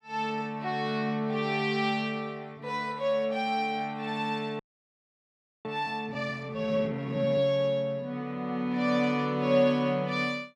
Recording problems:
audio freezing; at 4.5 s for 1 s

